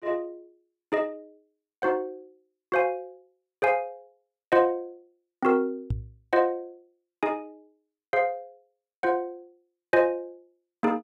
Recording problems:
microphone thump; at 6 s; peak +2 dB vs average level

